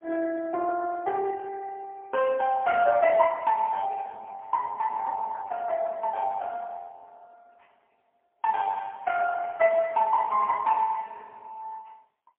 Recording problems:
telephone audio; 280 Hz to 3.2 kHz, AMR-NB, then MP3

